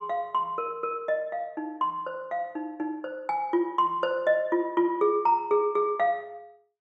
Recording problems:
none

